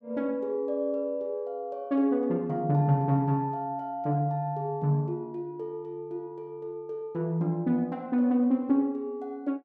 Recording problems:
none

